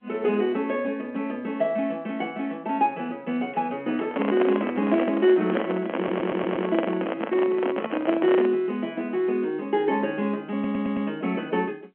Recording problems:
telephone audio; 220 Hz to 3.3 kHz, G.711
microphone handling noise; from 4 to 8.5 s; peak +3 dB vs average level
audio stuttering; at 6 s and at 11 s

